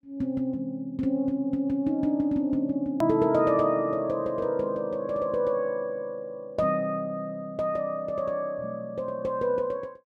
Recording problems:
click at an edit; at 3 s

